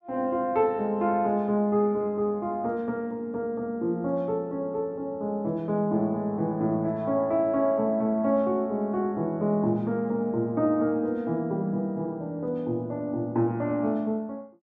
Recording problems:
none

